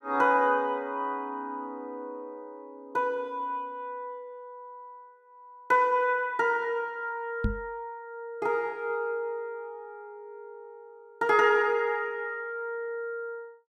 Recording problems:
microphone bump; at 7.5 s; peak +4 dB vs average level

